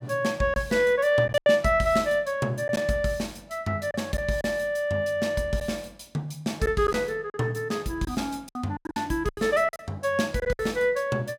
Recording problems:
lost packets; 7% of the sound replaced, filled with silence

